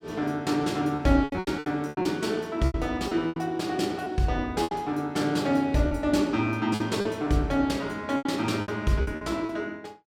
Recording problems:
packet loss; 11% of the sound replaced, filled with repeated pitch periods

